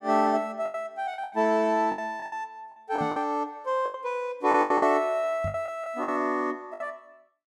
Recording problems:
packet loss; 12% of the sound replaced, filled with the last packet
microphone thump; at 3 s and at 5.5 s; peak -4 dB vs average level

